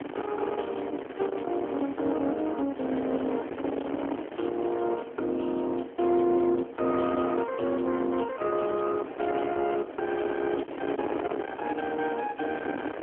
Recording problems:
phone line; 240 Hz to 2.7 kHz, AMR-NB
distorted audio; soft clipping, signal-to-distortion ratio 9 dB
wind on the microphone; below 780 Hz, SNR 9 dB

